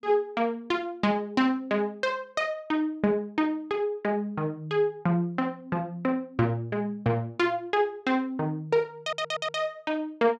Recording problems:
audio stuttering; at 9 s

